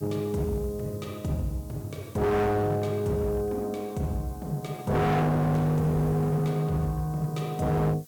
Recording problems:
distorted audio; hard clipping, signal-to-distortion ratio 6 dB
hiss; SNR 24 dB

